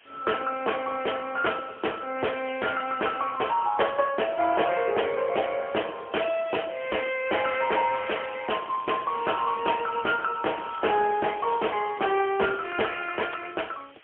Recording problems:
telephone audio; 280 Hz to 3.2 kHz, AMR-NB, then MP3
distortion; hard clipping, uneven, signal-to-distortion ratio 10 dB
hiss; SNR 27 dB
crackle; from 8 to 9.5 s, at 10 s and from 11 to 13 s; loose cable, SNR 20 dB

